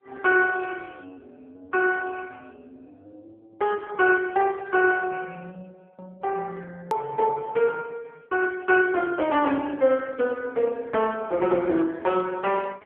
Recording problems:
telephone audio; 260 Hz to 3.4 kHz, AMR-NB
hard cut with a click; at 7 s

